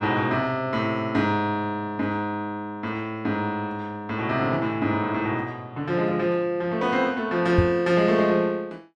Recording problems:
microphone thump; at 7.5 s; peak +7 dB vs average level

